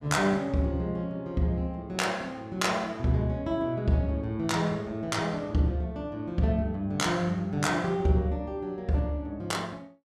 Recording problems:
none

